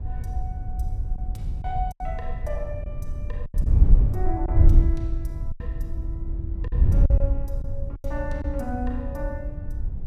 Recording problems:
wind noise; below 72 Hz, SNR -9 dB
packet loss; 6% of the sound replaced, filled with silence

